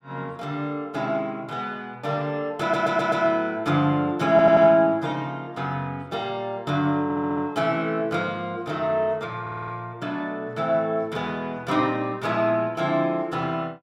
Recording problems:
stutter; 4 times, first at 2.5 s

